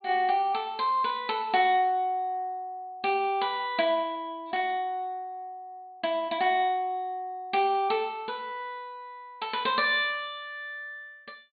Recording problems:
low-pass filter; nothing above 4.5 kHz
burst of static; at 1 s and at 4.5 s; peak -15 dB vs average level

